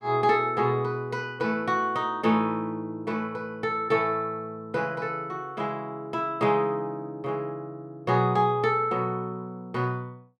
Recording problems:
none

